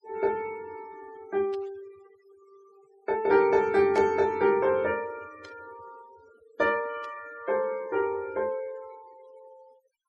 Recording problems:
denoising artefacts; signal-to-artefact ratio 25 dB
burst of static; 4 times, first at 1.5 s; peak -13 dB vs average level

